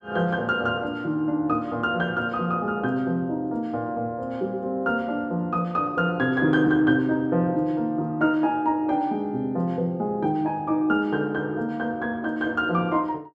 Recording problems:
none

